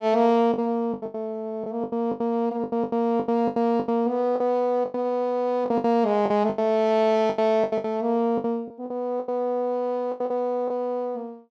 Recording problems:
lost packets; 15% of the sound replaced, filled with the last packet

